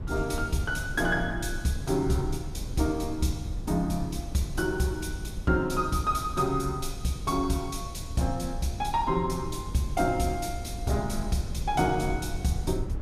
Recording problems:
rumble; below 100 Hz, SNR 8 dB

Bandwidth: 15.5 kHz